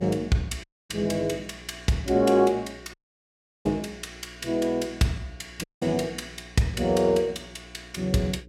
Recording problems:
electrical hum; 60 Hz, harmonics up to 540 Hz, SNR 23 dB
dropout; at 0.5 s, at 3 s for 0.5 s and at 5.5 s

